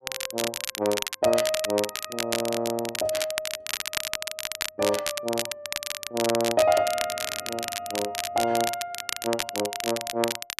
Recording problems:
crackling; vinyl, SNR 3 dB

